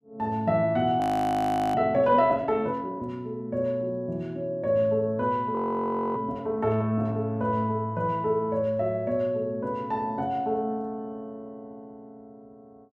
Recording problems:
audio freezing; at 1 s for 1 s and at 5.5 s for 0.5 s

